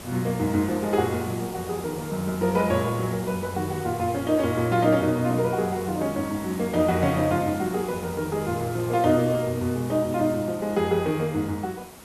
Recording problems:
background hiss; slope -4 dB per octave, SNR 15 dB

